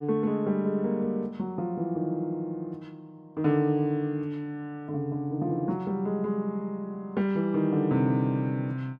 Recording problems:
none

